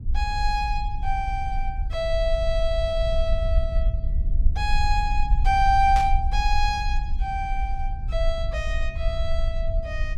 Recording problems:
rumble; below 56 Hz, SNR 1 dB
burst of static; at 6 s; peak -4 dB vs average level

